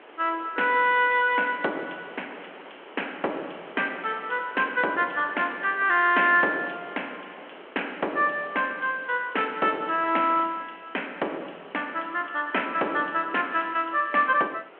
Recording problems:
phone line; 260 Hz to 3.3 kHz, G.726
hiss; SNR 28 dB
wind noise; below 1.3 kHz, SNR 22 dB

